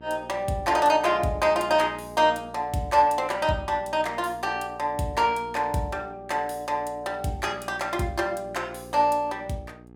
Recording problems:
hum; 60 Hz, harmonics up to 1.3 kHz, SNR 21 dB

